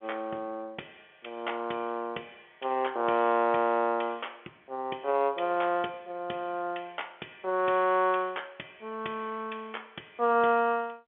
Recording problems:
telephone audio; 260 Hz to 3.5 kHz, G.711

